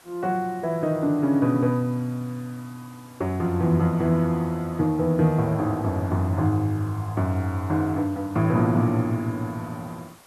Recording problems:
background hiss; SNR 26 dB

